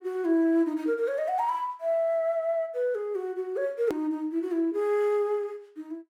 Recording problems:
hard cut with a click; at 4 s

